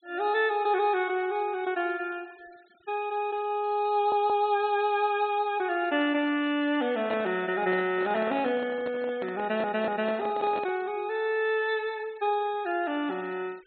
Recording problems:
low-pass filter; nothing above 4.3 kHz
noise reduction artefacts; signal-to-artefact ratio 26 dB
audio stuttering; at 4 s and at 9.5 s
microphone handling noise; from 7 to 11 s; peak -5 dB vs average level

